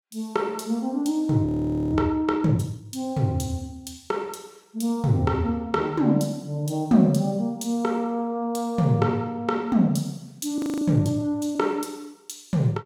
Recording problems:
frozen audio; at 1.5 s and at 11 s

